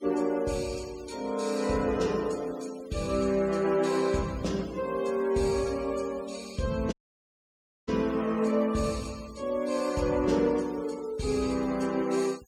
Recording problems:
denoising artefacts; signal-to-artefact ratio 20 dB
dropout; at 7 s for 1 s

